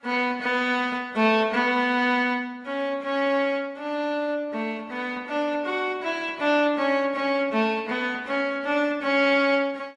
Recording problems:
codec artefacts; AAC, log-spectral distance 2 dB

